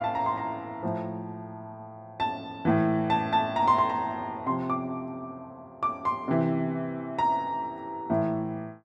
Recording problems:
none

